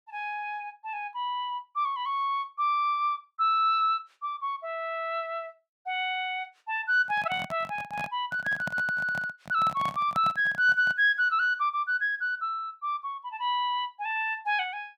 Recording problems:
handling noise; from 7 to 11 s; peak -4 dB vs average level

